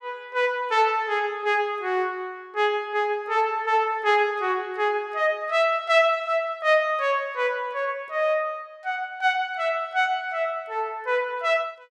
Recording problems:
none

